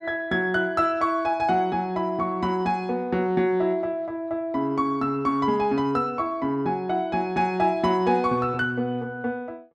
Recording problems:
none

